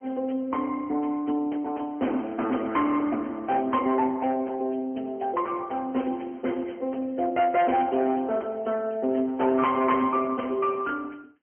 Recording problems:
telephone audio; 220 Hz to 3.2 kHz, AMR-NB
distortion; hard clipping, signal-to-distortion ratio 12 dB

